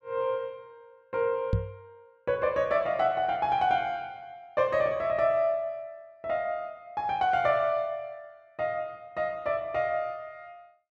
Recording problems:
knock on the microphone; at 1.5 s; peak +5 dB vs average level

